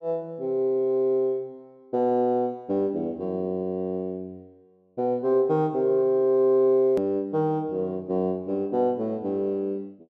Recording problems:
edit click; at 7 s

